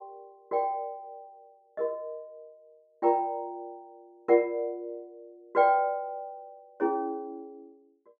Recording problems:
none

